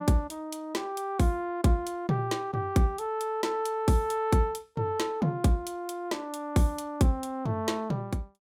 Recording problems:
none

